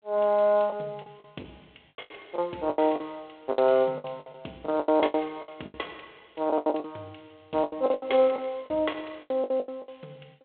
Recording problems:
telephone audio; 260 Hz to 3.6 kHz, G.726
packet loss; 17% of the sound replaced, filled with the last packet

